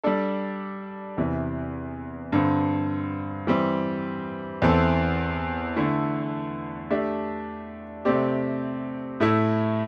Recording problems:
none

